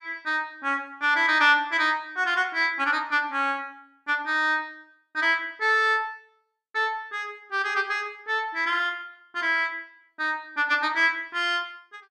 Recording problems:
none

